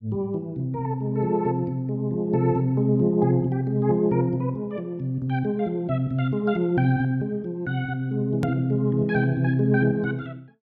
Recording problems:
edit click; at 8.5 s

